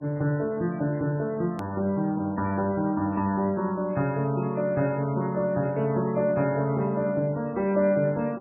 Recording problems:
lossy codec; MP3, log-spectral distance 2 dB, nothing above 13.1 kHz
edit click; at 1.5 s

